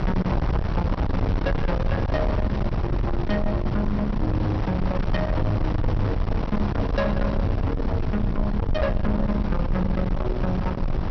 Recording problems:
treble cut off; nothing above 5.9 kHz
distorted audio; soft clipping, signal-to-distortion ratio 8 dB
rumble; below 150 Hz, SNR 3 dB
wind noise; below 270 Hz, SNR 1 dB

